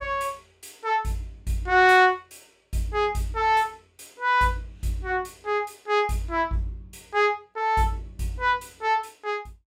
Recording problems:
none

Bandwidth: 16.5 kHz